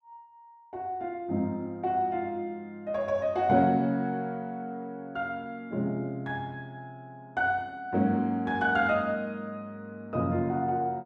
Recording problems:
none

